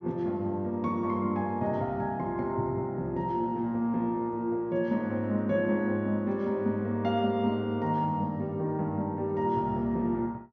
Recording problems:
treble cut off; nothing above 7.2 kHz

